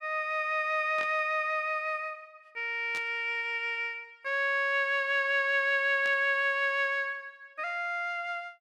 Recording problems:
burst of static; at 1 s, at 3 s and at 6 s; peak -10 dB vs average level

